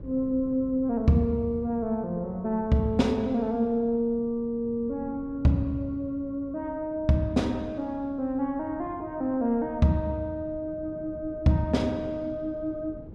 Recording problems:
wind noise; below 250 Hz, SNR 19 dB

